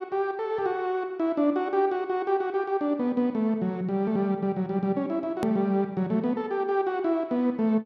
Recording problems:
hard cut with a click; at 5.5 s

